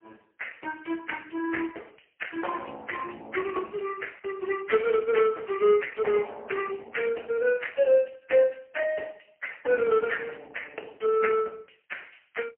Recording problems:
telephone audio; 300 Hz to 3 kHz, AMR-NB, then MP3

